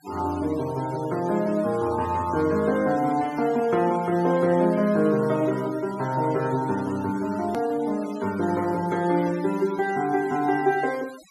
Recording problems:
noise reduction artefacts; signal-to-artefact ratio 20 dB
hard cut with a click; at 7.5 s

